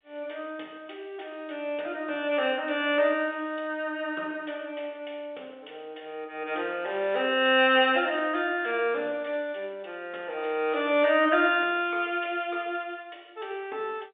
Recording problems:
telephone audio; 340 Hz to 3.6 kHz, G.711

